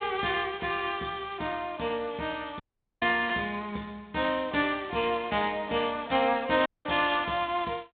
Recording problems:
phone line; 170 Hz to 3.7 kHz, G.726
audio cutting out; at 2.5 s and at 6.5 s

